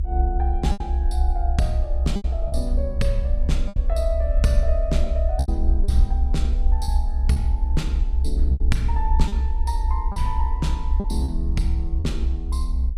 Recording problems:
rumble; below 66 Hz, SNR -6 dB
lost packets; 6% of the sound replaced, filled with repeated pitch periods

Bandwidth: 15 kHz